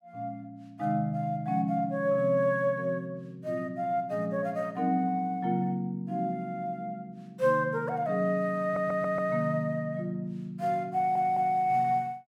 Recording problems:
stutter; at 8.5 s and at 11 s

